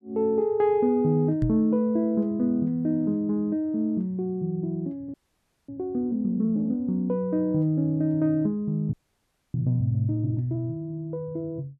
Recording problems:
microphone bump; at 1.5 s; peak +3 dB vs average level
frozen audio; at 5 s for 0.5 s and at 9 s for 0.5 s

